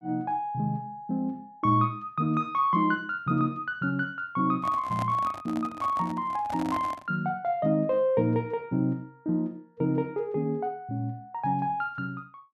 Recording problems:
microphone handling noise; from 4.5 to 7 s; peak -4 dB vs average level

